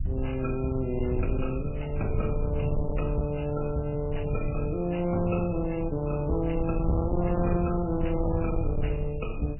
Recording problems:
lossy compression; MP3, log-spectral distance 5 dB, nothing above 2.8 kHz
distorted audio; soft clipping, signal-to-distortion ratio 11 dB
low-frequency rumble; below 110 Hz, SNR 4 dB

